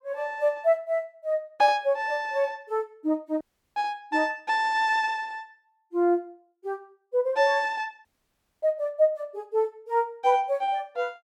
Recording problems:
audio cutting out; at 3.5 s and at 8 s for 0.5 s

